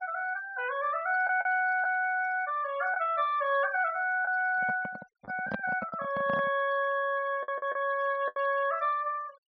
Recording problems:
treble missing; nothing above 6.1 kHz
denoising artefacts; signal-to-artefact ratio 23 dB
packet loss; 4% of the sound replaced, filled with the last packet
handling noise; from 4.5 to 6.5 s; peak -1 dB vs average level

